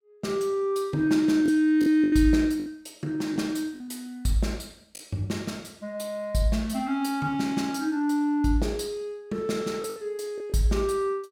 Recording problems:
packet loss; 4% of the sound replaced, filled with the last packet

